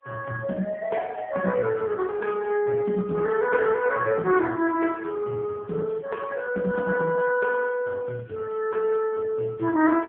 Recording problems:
telephone audio; 170 Hz to 2.5 kHz, AMR-NB

